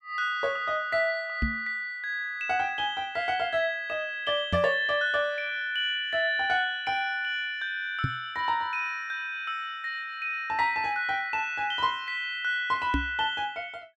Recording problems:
microphone thump; 4 times, first at 1.5 s; peak +3 dB vs average level

